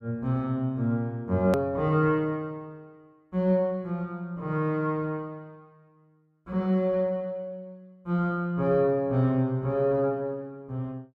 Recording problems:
click at an edit; at 1.5 s

